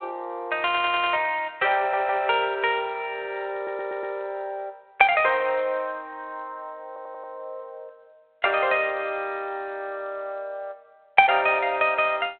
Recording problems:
phone line; 340 Hz to 3.7 kHz, G.726
audio stuttering; 4 times, first at 0.5 s

